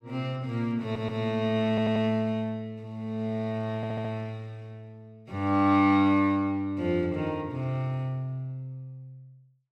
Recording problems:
audio stuttering; at 1 s, at 1.5 s and at 4 s

